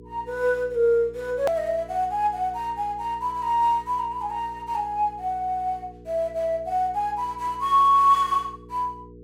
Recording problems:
hum; 60 Hz, harmonics up to 480 Hz, SNR 21 dB
click at an edit; at 1.5 s

